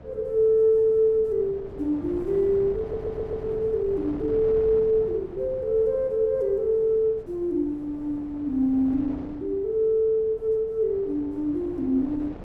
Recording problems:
wind on the microphone; below 450 Hz, SNR 17 dB
stutter; at 3 s

